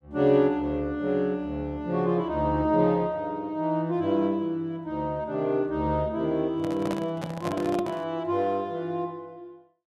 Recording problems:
handling noise; from 6.5 to 8 s; peak -2 dB vs average level

